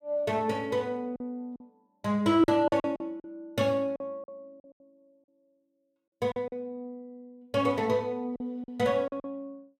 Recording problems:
lost packets; 8% of the sound replaced, filled with silence

